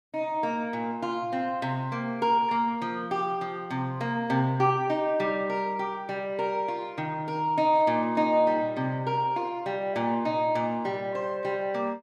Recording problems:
none

